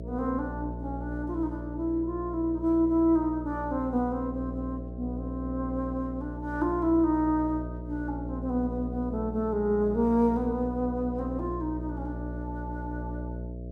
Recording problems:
hum; 60 Hz, harmonics up to 660 Hz, SNR 8 dB

